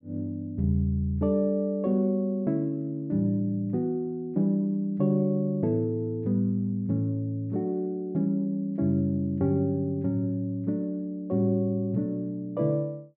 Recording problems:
none

